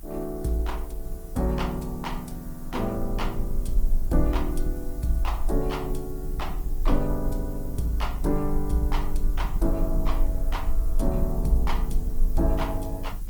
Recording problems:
lossy compression; Opus, log-spectral distance 2 dB
electrical hum; 60 Hz, harmonics up to 420 Hz, SNR 22 dB
hiss; SNR 19 dB
rumble; below 40 Hz, strongest tone 24 Hz, SNR 2 dB

